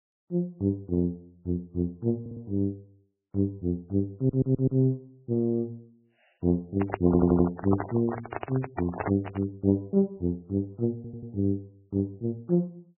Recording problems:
codec artefacts; MP3, log-spectral distance 2 dB, nothing above 11.3 kHz
audio stuttering; 4 times, first at 2 s
microphone handling noise; from 7 to 9.5 s; peak +2 dB vs average level

